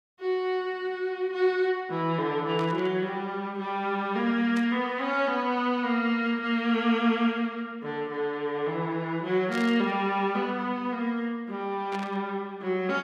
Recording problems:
static burst; 4 times, first at 2.5 s; peak -8 dB vs average level

